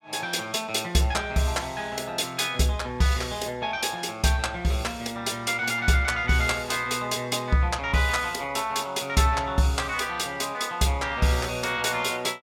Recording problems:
none

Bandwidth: 17 kHz